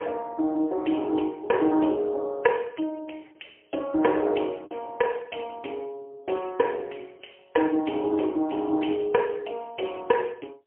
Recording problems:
telephone audio; 280 Hz to 3.3 kHz, AMR-NB, then MP3
packet loss; 0.6% of the sound replaced, filled with the last packet

